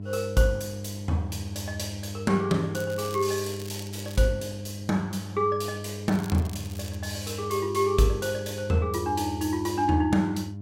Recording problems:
hum; 50 Hz, harmonics up to 600 Hz, SNR 9 dB
crackling; from 2.5 to 4 s and at 6 s; loose cable, SNR 17 dB

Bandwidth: 16 kHz